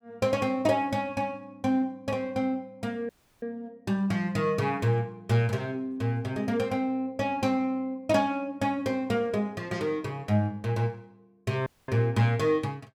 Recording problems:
dropout; at 3 s and at 12 s

